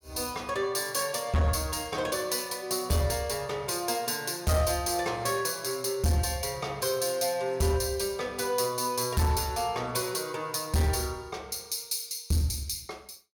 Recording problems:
distortion; hard clipping, signal-to-distortion ratio 11 dB

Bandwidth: 17.5 kHz